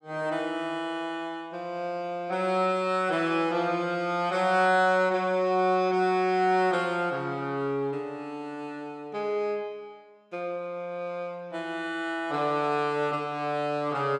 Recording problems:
none

